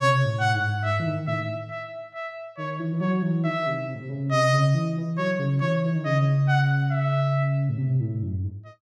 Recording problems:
none

